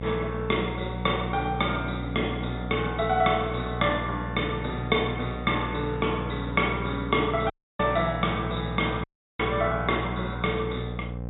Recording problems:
low-pass filter; nothing above 4 kHz
hum; 60 Hz, harmonics up to 780 Hz, SNR 7 dB
dropout; at 7.5 s and at 9 s

